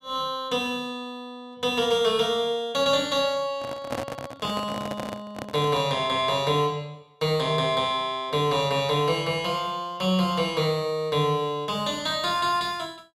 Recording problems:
handling noise; from 3.5 to 6 s; peak -2 dB vs average level

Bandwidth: 14.5 kHz